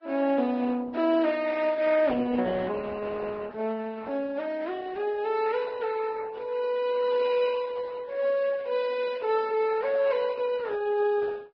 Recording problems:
lossy codec; Opus, then Vorbis, log-spectral distance 3 dB

